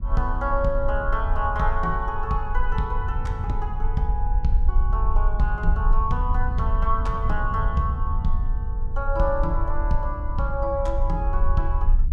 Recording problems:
low-frequency rumble; below 50 Hz, SNR 0 dB
wind on the microphone; below 88 Hz, SNR 4 dB

